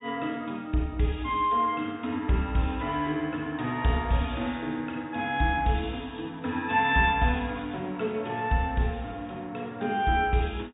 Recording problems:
low-pass filter; nothing above 4 kHz

